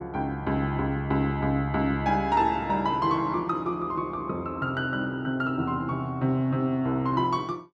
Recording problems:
none

